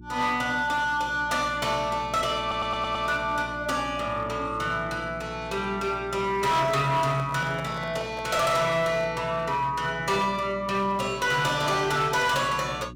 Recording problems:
distorted audio; hard clipping, uneven, signal-to-distortion ratio 12 dB
hum; 60 Hz, harmonics up to 360 Hz, SNR 18 dB
audio stuttering; at 2.5 s
microphone handling noise; from 6.5 to 9 s; peak -8 dB vs average level

